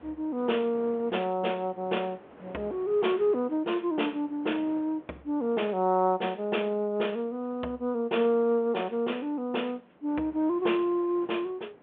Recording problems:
telephone audio; 260 Hz to 3.4 kHz, G.726
wind noise; below 900 Hz, SNR 24 dB

